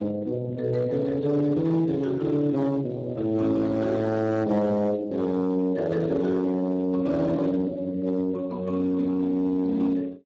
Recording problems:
codec artefacts; Speex, log-spectral distance 2 dB, nothing above 7.3 kHz
distorted audio; hard clipping, uneven, signal-to-distortion ratio 11 dB

